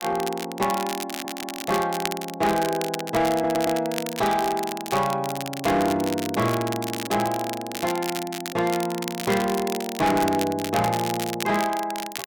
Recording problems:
distorted audio; hard clipping, uneven, signal-to-distortion ratio 11 dB
crackling; vinyl, SNR 9 dB
stutter; at 1 s and at 3.5 s

